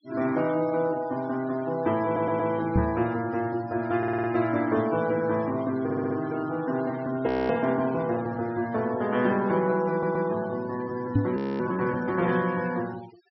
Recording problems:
low-pass filter; nothing above 5.6 kHz
noise reduction artefacts; signal-to-artefact ratio 19 dB
stutter; 4 times, first at 2 s
microphone bump; at 3 s and at 11 s; peak +7 dB vs average level
frozen audio; at 7.5 s and at 11 s

